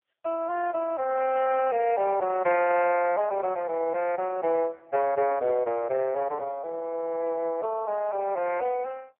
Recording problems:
telephone audio; 320 Hz to 2.5 kHz, AMR-NB

